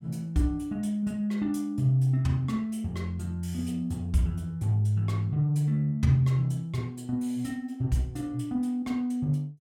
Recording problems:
none

